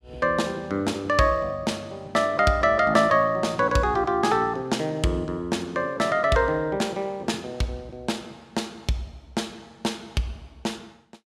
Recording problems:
none

